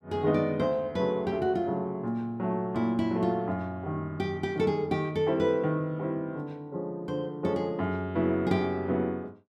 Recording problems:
none

